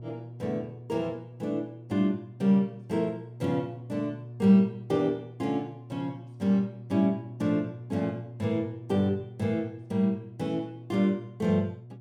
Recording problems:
electrical hum; 60 Hz, harmonics up to 600 Hz, SNR 15 dB

